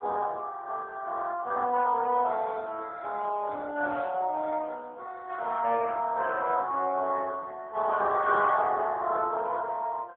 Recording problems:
phone line; 260 Hz to 3.5 kHz, AMR-NB

